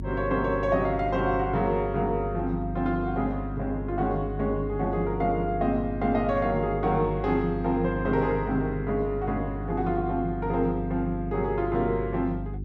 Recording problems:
hum; 50 Hz, harmonics up to 400 Hz, SNR 8 dB

